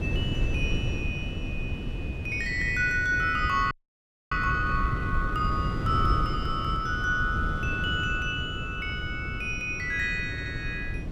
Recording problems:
wind on the microphone; below 170 Hz, SNR 4 dB
audio freezing; at 3.5 s for 0.5 s
audio stuttering; at 10 s

